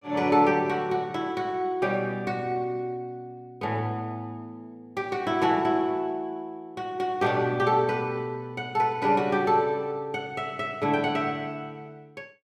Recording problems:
none

